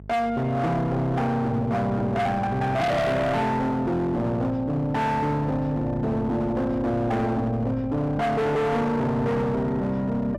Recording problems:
distorted audio; hard clipping, signal-to-distortion ratio 8 dB
electrical hum; 50 Hz, harmonics up to 650 Hz, SNR 16 dB

